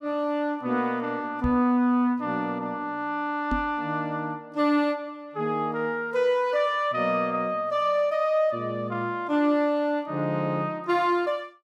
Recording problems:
knock on the microphone; at 1.5 s and at 3.5 s; peak +1 dB vs average level

